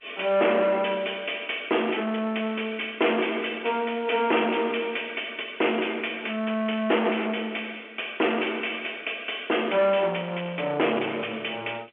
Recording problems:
phone line; 280 Hz to 3.3 kHz, G.711
distorted audio; soft clipping, signal-to-distortion ratio 8 dB

